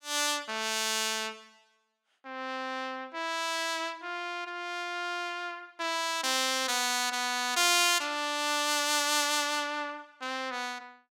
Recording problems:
none

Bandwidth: 17 kHz